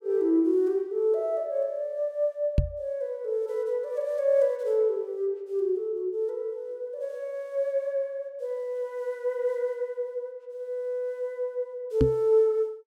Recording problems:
microphone bump; at 2.5 s and at 12 s; peak +9 dB vs average level

